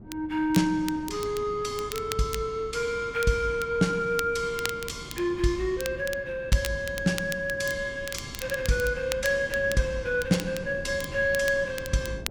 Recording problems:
wind noise; below 270 Hz, SNR 16 dB
crackling; vinyl, SNR 12 dB

